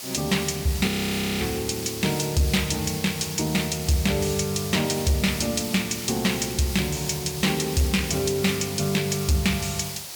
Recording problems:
distortion; soft clipping, signal-to-distortion ratio 12 dB
hiss; slope +1 dB per octave, SNR 8 dB
frozen audio; at 1 s for 0.5 s

